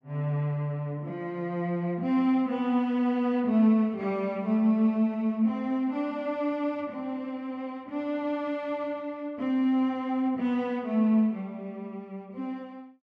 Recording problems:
none

